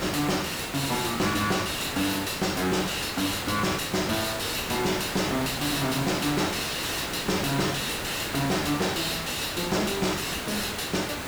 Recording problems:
distorted audio; soft clipping, signal-to-distortion ratio 6 dB
hiss; SNR 5 dB

